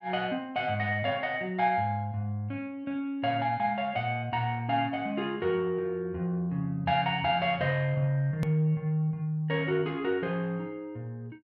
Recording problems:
edit click; at 8.5 s

